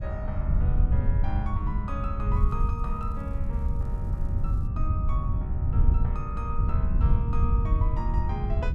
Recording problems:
wind noise; below 90 Hz, SNR -10 dB
crackling; from 2.5 to 4.5 s and at 4.5 s; loose cable, SNR 29 dB

